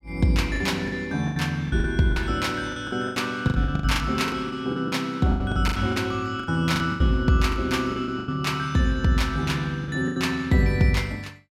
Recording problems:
packet loss; 14% of the sound replaced, filled with the last packet

